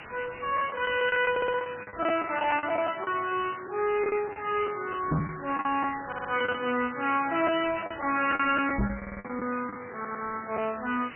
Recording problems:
lossy codec; MP3, log-spectral distance 20 dB, nothing above 2.7 kHz
distortion; hard clipping, signal-to-distortion ratio 10 dB
background hiss; SNR 14 dB
lost packets; 10% of the sound replaced, filled with the last packet
audio stuttering; 4 times, first at 1.5 s
microphone bump; at 5 s and at 9 s; peak +4 dB vs average level

